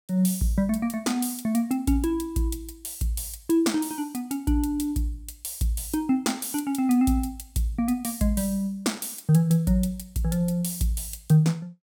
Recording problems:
none

